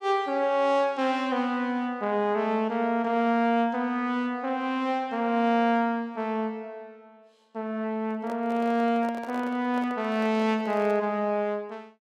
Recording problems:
microphone handling noise; from 8 to 11 s; peak -10 dB vs average level

